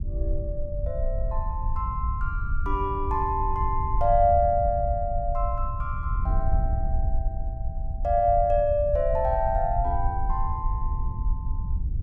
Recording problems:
wind on the microphone; below 68 Hz, SNR 3 dB

